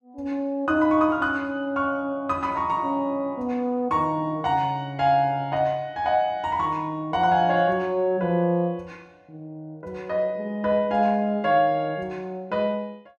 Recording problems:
none

